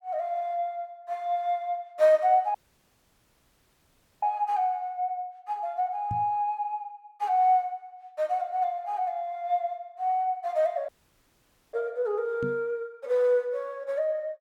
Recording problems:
audio cutting out; at 2.5 s for 1.5 s and at 11 s for 1 s
microphone thump; at 6 s and at 12 s; peak -3 dB vs average level

